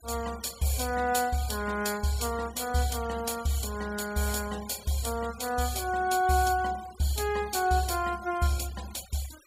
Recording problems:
denoising artefacts; signal-to-artefact ratio 17 dB

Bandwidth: 15.5 kHz